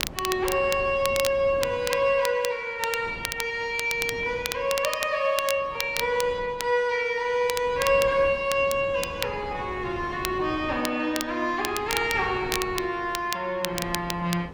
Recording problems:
wind on the microphone; below 490 Hz, SNR 17 dB
crackle; vinyl, SNR 9 dB

